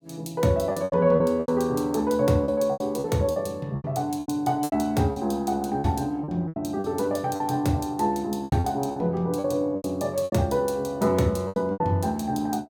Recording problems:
lost packets; 12% of the sound replaced, filled with repeated pitch periods

